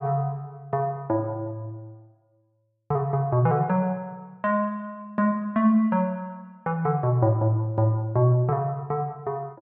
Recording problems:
none

